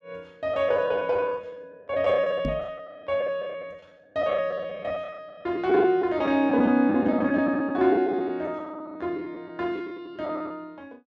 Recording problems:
packet loss; 13% of the sound replaced, filled with the last packet
knock on the microphone; at 2.5 s; peak -1 dB vs average level

